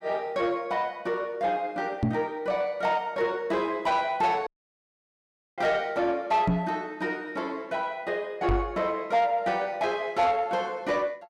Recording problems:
distortion; soft clipping, signal-to-distortion ratio 12 dB
microphone bump; at 2 s, at 6.5 s and at 8.5 s; peak +6 dB vs average level
dropout; at 4.5 s for 1 s

